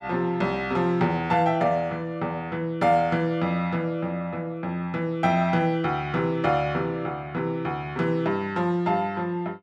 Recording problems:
none

